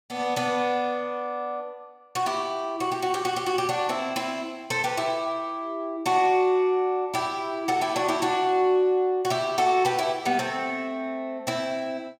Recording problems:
none

